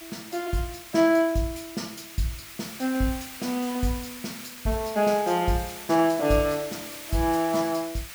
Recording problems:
hiss; SNR 13 dB

